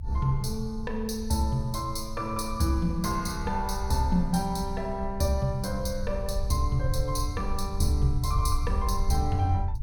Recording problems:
rumble; below 72 Hz, SNR 6 dB

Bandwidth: 17.5 kHz